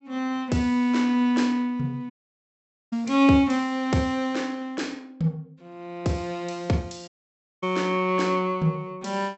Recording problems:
treble cut off; nothing above 7.9 kHz
dropout; at 2 s for 1 s and at 7 s for 0.5 s

